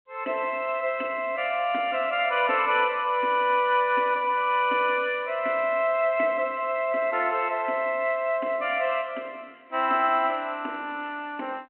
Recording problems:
telephone audio; 220 Hz to 3.1 kHz, G.726

